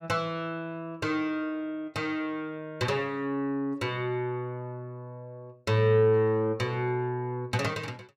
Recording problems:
none

